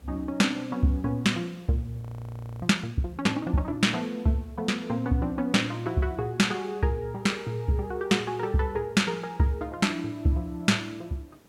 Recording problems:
background hiss; slope -5 dB per octave, SNR 30 dB
audio freezing; at 2 s for 0.5 s

